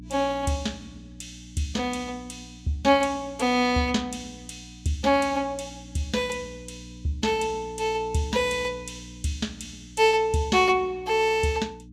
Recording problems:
electrical hum; 60 Hz, harmonics up to 300 Hz, SNR 19 dB

